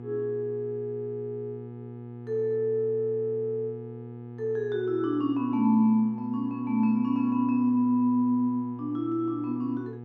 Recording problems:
electrical hum; 60 Hz, harmonics up to 960 Hz, SNR 14 dB

